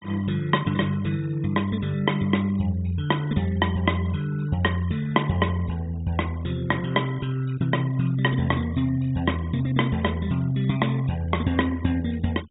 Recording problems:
low-pass filter; nothing above 4 kHz
noise reduction artefacts; signal-to-artefact ratio 23 dB

